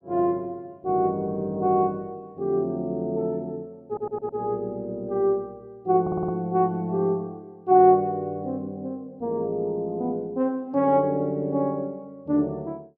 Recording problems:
audio stuttering; at 4 s and at 6 s

